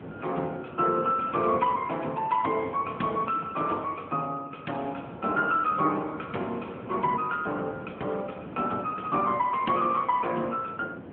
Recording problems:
telephone audio; 190 Hz to 3.4 kHz, AMR-NB
wind on the microphone; below 560 Hz, SNR 15 dB

